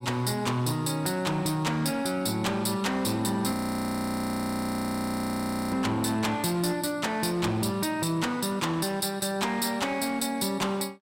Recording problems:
distorted audio; hard clipping, signal-to-distortion ratio 11 dB
audio freezing; at 3.5 s for 2 s

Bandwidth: 16 kHz